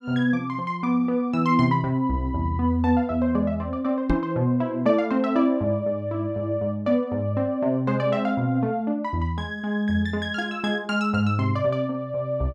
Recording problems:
microphone bump; at 4 s; peak +5 dB vs average level

